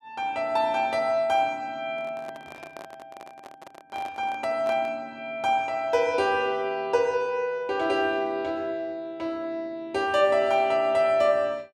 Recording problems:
handling noise; from 2 to 5 s; peak -10 dB vs average level

